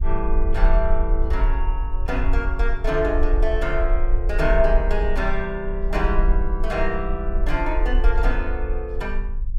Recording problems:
low-frequency rumble; below 46 Hz, SNR -1 dB

